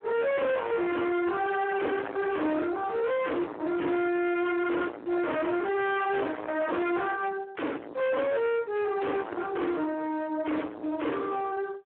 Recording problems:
phone line; 240 Hz to 3.5 kHz, Speex
distortion; soft clipping, signal-to-distortion ratio 5 dB

